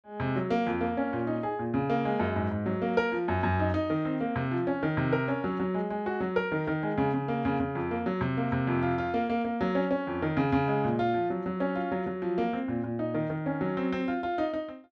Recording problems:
none

